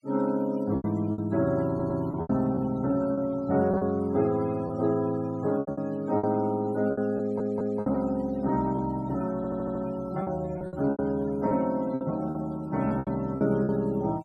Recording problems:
noise reduction artefacts; signal-to-artefact ratio 23 dB
packet loss; 10% of the sound replaced, filled with repeated pitch periods
stutter; at 1.5 s, at 7 s and at 9.5 s

